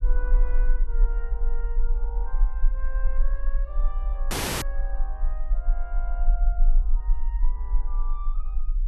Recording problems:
low-frequency rumble; below 38 Hz, strongest tone 22 Hz, SNR -16 dB
dropout; at 4.5 s

